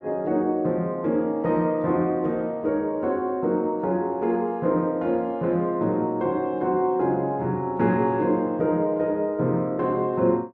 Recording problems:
none

